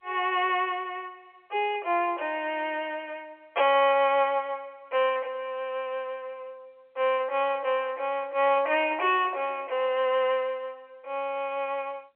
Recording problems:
phone line; 320 Hz to 3.3 kHz, G.711

